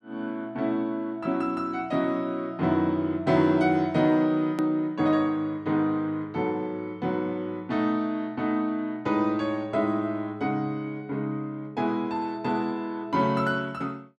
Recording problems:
click at an edit; at 4.5 s

